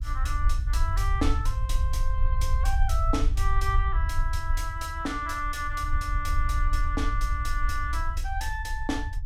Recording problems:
low-frequency rumble; below 60 Hz, SNR -3 dB

